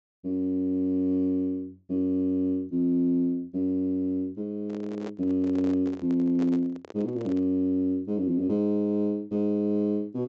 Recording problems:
low-pass filter; nothing above 8 kHz
handling noise; from 4.5 to 7.5 s; peak -7 dB vs average level

